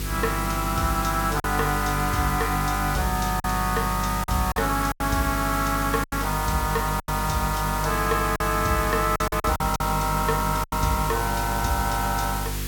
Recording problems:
electrical hum; 50 Hz, harmonics up to 500 Hz, SNR 6 dB
hiss; SNR 8 dB
lost packets; 6% of the sound replaced, filled with silence

